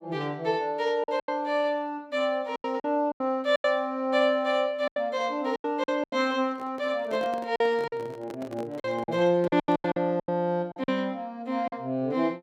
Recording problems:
lost packets; 10% of the sound replaced, filled with silence
handling noise; from 6.5 to 10 s; peak -9 dB vs average level

